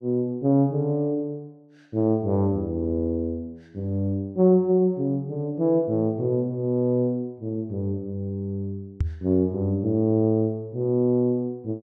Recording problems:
knock on the microphone; at 9 s; peak +3 dB vs average level

